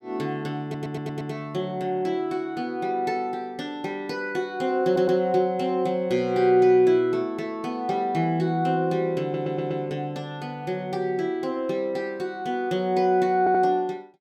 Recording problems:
stutter; 4 times, first at 0.5 s

